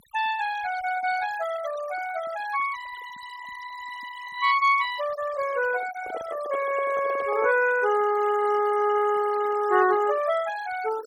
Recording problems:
denoising artefacts; signal-to-artefact ratio 14 dB
microphone handling noise; from 6 to 7.5 s; peak -7 dB vs average level

